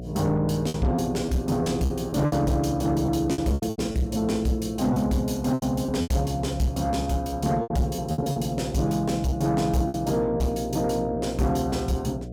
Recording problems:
distortion; soft clipping, signal-to-distortion ratio 11 dB
electrical hum; 60 Hz, harmonics up to 720 Hz, SNR 12 dB
lost packets; 9% of the sound replaced, filled with repeated pitch periods

